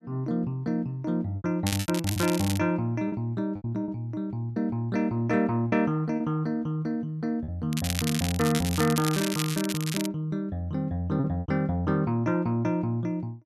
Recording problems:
lost packets; 6% of the sound replaced, filled with repeated pitch periods
crackling; at 1.5 s and from 7.5 to 10 s; loose cable, SNR 6 dB

